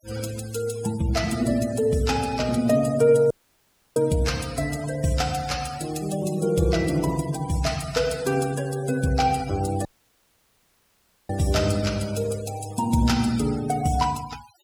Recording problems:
denoising artefacts; signal-to-artefact ratio 15 dB
audio cutting out; at 3.5 s for 0.5 s and at 10 s for 1.5 s

